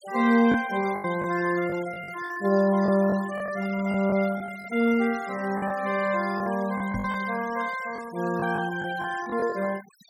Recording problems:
denoising artefacts; signal-to-artefact ratio 18 dB
lost packets; 8% of the sound replaced, filled with the last packet
microphone thump; at 7 s; peak -4 dB vs average level

